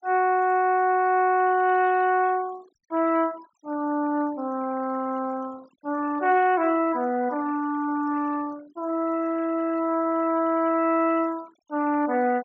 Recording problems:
low-pass filter; nothing above 8 kHz
noise reduction artefacts; signal-to-artefact ratio 24 dB

